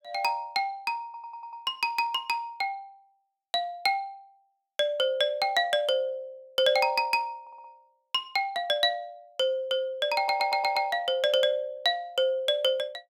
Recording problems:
stutter; at 1 s, at 7.5 s and at 10 s

